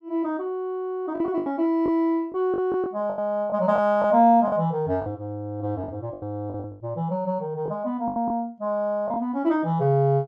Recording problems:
packet loss; 9% of the sound replaced, filled with the last packet

